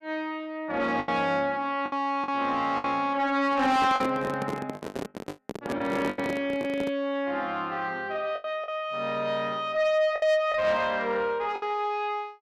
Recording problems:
distorted audio; soft clipping, signal-to-distortion ratio 11 dB
packet loss; 6% of the sound replaced, filled with the last packet
handling noise; from 3.5 to 7 s; peak -1 dB vs average level

